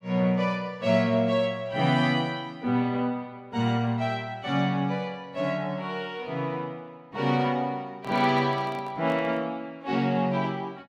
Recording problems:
handling noise; from 8 to 9.5 s; peak -10 dB vs average level

